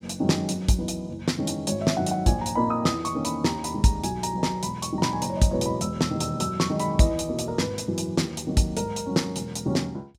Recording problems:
none

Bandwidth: 16.5 kHz